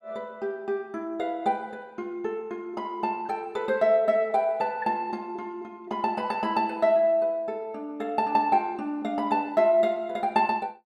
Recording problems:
none

